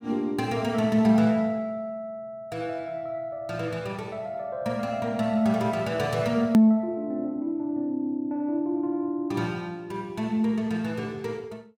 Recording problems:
edit click; at 6.5 s

